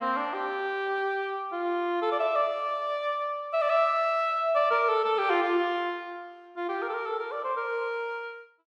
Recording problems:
none

